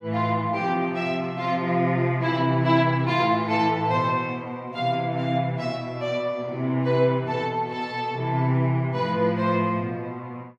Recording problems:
none

